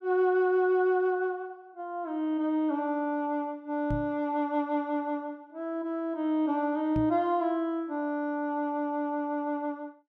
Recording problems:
microphone bump; at 4 s and at 7 s; peak -1 dB vs average level

